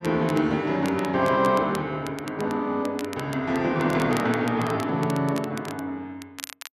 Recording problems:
crackling; vinyl, SNR 17 dB

